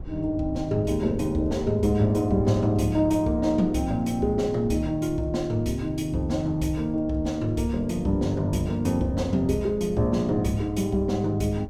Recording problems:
wind on the microphone; below 140 Hz, SNR 17 dB

